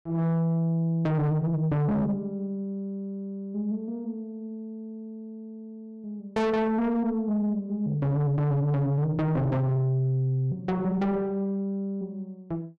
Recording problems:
distorted audio; soft clipping, signal-to-distortion ratio 7 dB

